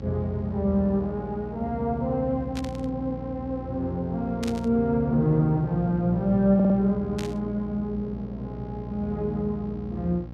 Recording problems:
hum; 60 Hz, harmonics up to 840 Hz, SNR 12 dB
burst of static; at 2.5 s, at 4.5 s and at 7 s; peak -6 dB vs average level
audio stuttering; at 6.5 s

